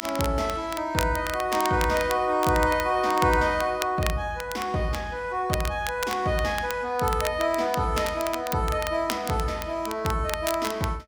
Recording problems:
crackle; vinyl, SNR 11 dB

